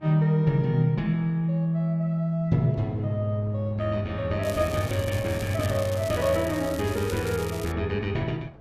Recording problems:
wind noise; below 550 Hz, SNR 23 dB
crackling; from 4.5 to 7.5 s; loose cable, SNR 15 dB

